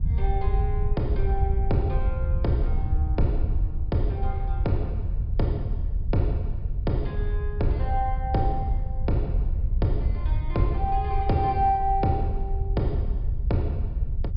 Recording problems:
low-pass filter; nothing above 5.5 kHz
wind on the microphone; below 74 Hz, SNR -1 dB

